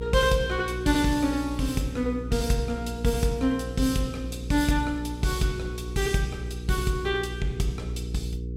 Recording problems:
mains hum; 60 Hz, harmonics up to 480 Hz, SNR 8 dB

